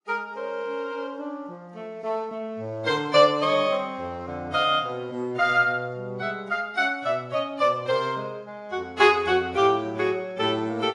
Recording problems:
lossy codec; AAC, log-spectral distance 2 dB, nothing above 10.7 kHz

